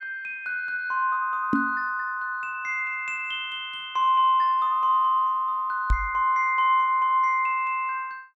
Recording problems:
microphone thump; at 1.5 s and at 6 s; peak +4 dB vs average level

